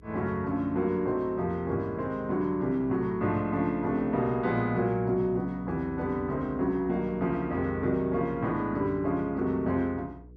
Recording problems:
mains hum; 60 Hz, harmonics up to 480 Hz, SNR 21 dB

